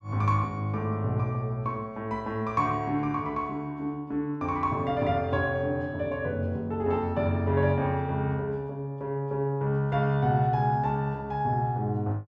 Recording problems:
none

